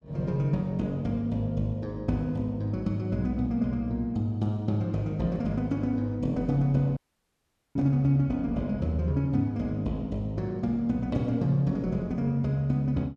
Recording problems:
audio cutting out; at 7 s for 1 s

